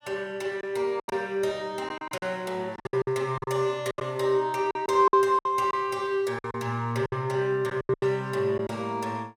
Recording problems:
lost packets; 12% of the sound replaced, filled with silence

